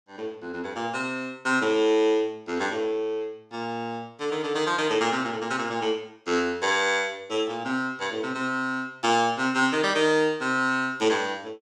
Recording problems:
none

